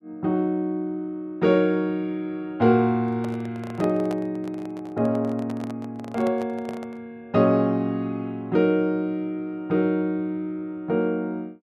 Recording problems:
microphone handling noise; from 3 to 7 s; peak -6 dB vs average level

